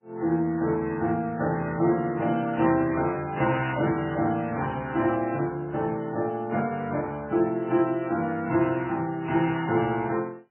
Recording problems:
lossy compression; MP3, then AAC, log-spectral distance 2 dB, nothing above 2.7 kHz

